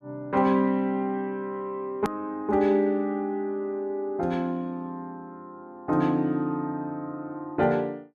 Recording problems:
edit click; at 2 s

